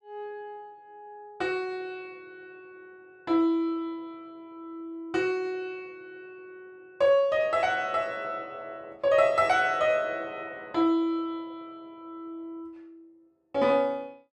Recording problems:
none

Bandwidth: 13 kHz